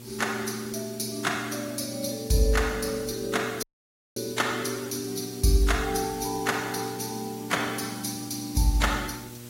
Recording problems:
lossy codec; AAC, log-spectral distance 8 dB, nothing above 16 kHz
hum; 60 Hz, harmonics up to 960 Hz, SNR 17 dB
background hiss; slope 0 dB per octave, SNR 17 dB
dropout; at 3.5 s for 0.5 s

